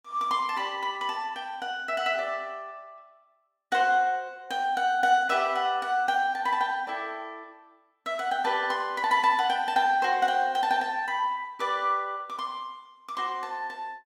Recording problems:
none

